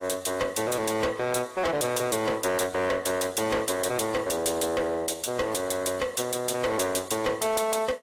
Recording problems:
codec artefacts; AAC, log-spectral distance 5 dB, nothing above 15.1 kHz
distorted audio; hard clipping, signal-to-distortion ratio 6 dB

